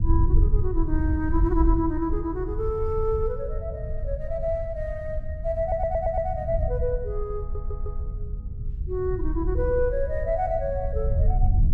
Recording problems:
low-frequency rumble; below 74 Hz, SNR 1 dB
stutter; at 5.5 s and at 7.5 s

